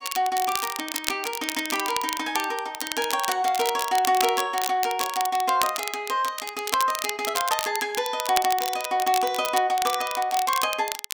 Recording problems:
crackling; vinyl, SNR 6 dB

